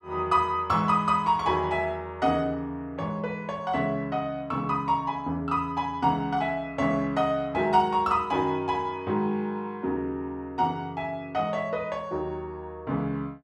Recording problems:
none

